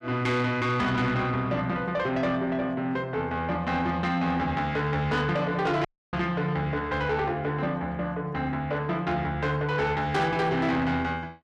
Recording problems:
distortion; soft clipping, signal-to-distortion ratio 11 dB
audio cutting out; at 6 s

